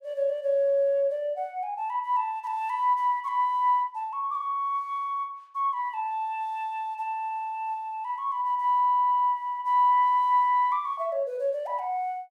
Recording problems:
none

